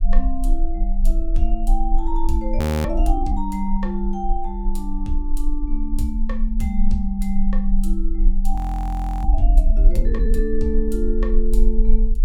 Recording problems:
low-frequency rumble; below 38 Hz, strongest tone 20 Hz, SNR -3 dB
audio freezing; at 2.5 s and at 8.5 s for 0.5 s

